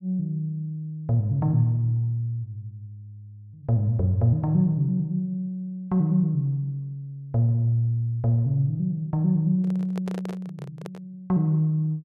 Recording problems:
handling noise; from 9.5 to 11 s; peak -9 dB vs average level

